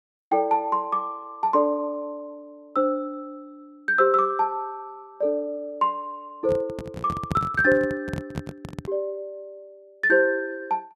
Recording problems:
microphone handling noise; from 6.5 to 9 s; peak +1 dB vs average level

